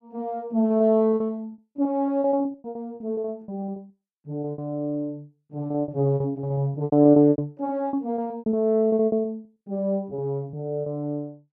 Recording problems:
lost packets; 18% of the sound replaced, filled with repeated pitch periods

